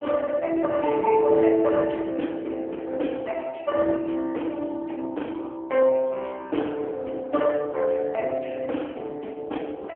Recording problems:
phone line; 220 Hz to 3.3 kHz, AMR-NB

